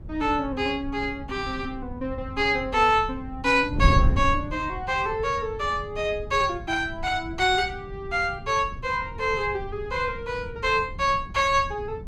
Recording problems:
wind on the microphone; below 120 Hz, SNR 9 dB

